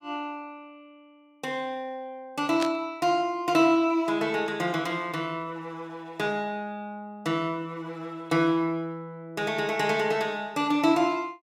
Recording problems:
burst of static; at 2.5 s; peak -1 dB vs average level

